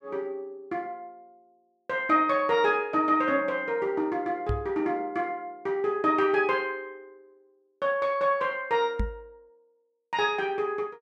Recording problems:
knock on the microphone; at 4.5 s and at 9 s; peak +1 dB vs average level

